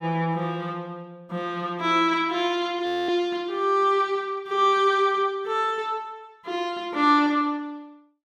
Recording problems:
audio freezing; at 3 s

